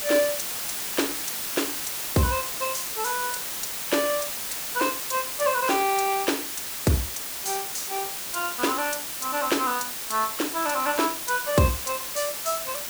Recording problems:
background hiss; slope 0 dB per octave, SNR 2 dB

